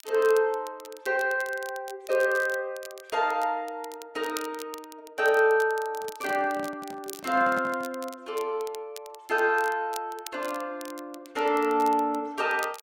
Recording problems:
crackle; vinyl, SNR 19 dB
handling noise; from 6 to 8 s; peak -8 dB vs average level

